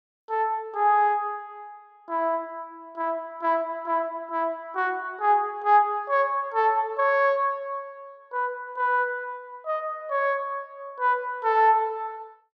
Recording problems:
none

